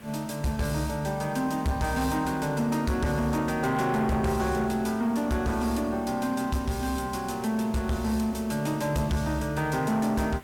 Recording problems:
distortion; soft clipping, signal-to-distortion ratio 12 dB
background hiss; SNR 21 dB

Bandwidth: 18 kHz